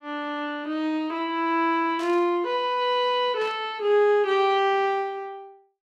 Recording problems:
static burst; at 2 s and at 3.5 s; peak -14 dB vs average level

